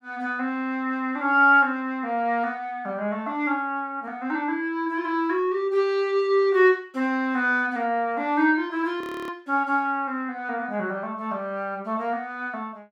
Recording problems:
frozen audio; at 9 s

